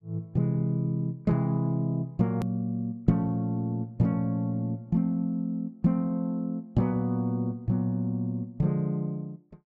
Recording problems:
click at an edit; at 2.5 s

